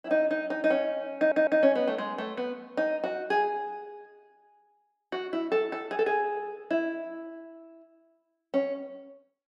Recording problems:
stutter; at 1 s

